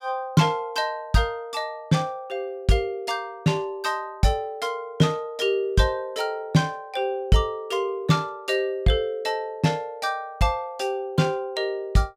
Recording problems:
none

